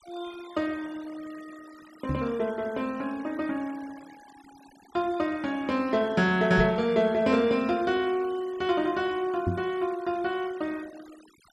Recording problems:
noise reduction artefacts; signal-to-artefact ratio 22 dB
knock on the microphone; at 2 s, at 6.5 s and at 9.5 s; peak +2 dB vs average level

